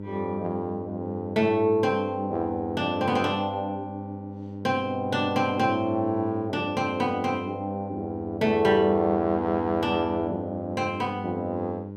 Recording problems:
hum; 50 Hz, harmonics up to 900 Hz, SNR 10 dB

